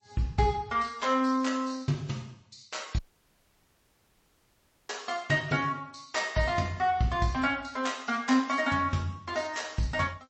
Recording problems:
codec artefacts; G.722, then MP3, log-spectral distance 5 dB, nothing above 7.8 kHz
audio cutting out; at 3 s for 2 s

